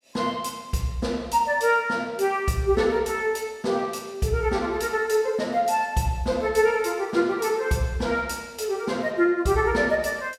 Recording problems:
none

